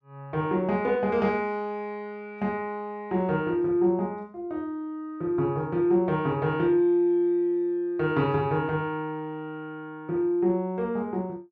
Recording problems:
none

